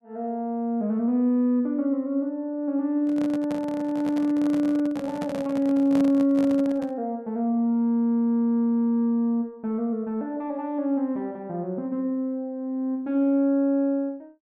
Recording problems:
handling noise; from 3 to 7 s; peak -5 dB vs average level

